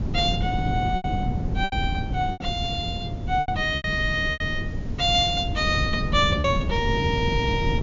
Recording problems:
treble missing; nothing above 7.1 kHz
hiss; slope -1 dB per octave, SNR 28 dB
wind noise; below 190 Hz, SNR 4 dB
packet loss; 7% of the sound replaced, filled with repeated pitch periods

